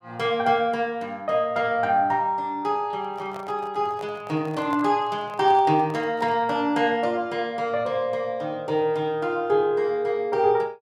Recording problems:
microphone handling noise; from 3 to 6.5 s; peak -9 dB vs average level

